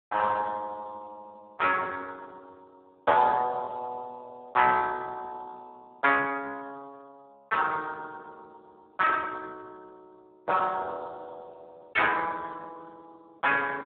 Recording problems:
telephone audio; 240 Hz to 3.7 kHz, Speex

